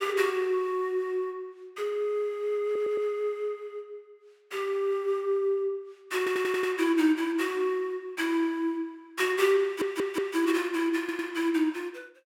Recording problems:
stutter; 4 times, first at 2.5 s

